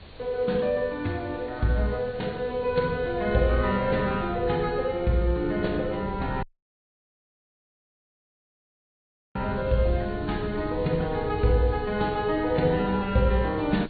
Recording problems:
treble cut off; nothing above 4.5 kHz
lossy compression; AAC, log-spectral distance 4 dB
background hiss; SNR 23 dB
wind noise; below 130 Hz, SNR 13 dB
audio cutting out; at 6.5 s for 3 s

